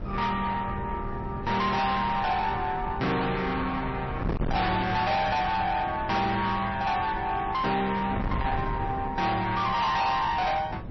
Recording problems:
codec artefacts; MP3, log-spectral distance 2 dB, nothing above 5.8 kHz
distortion; soft clipping, signal-to-distortion ratio 7 dB
wind on the microphone; below 430 Hz, SNR 8 dB

